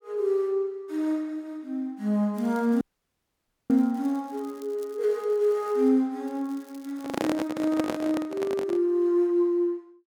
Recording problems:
crackle; from 2.5 to 6 s and from 6.5 to 7.5 s; loose cable, SNR 29 dB
dropout; at 3 s for 1 s
microphone handling noise; from 7 to 9 s; peak +2 dB vs average level

